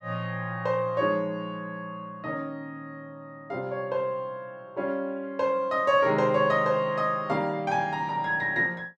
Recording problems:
none

